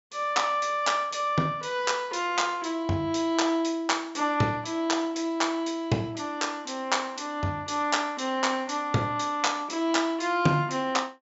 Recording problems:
treble cut off; nothing above 8 kHz

